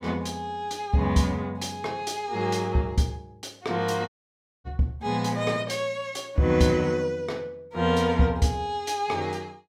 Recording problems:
dropout; at 4 s for 0.5 s

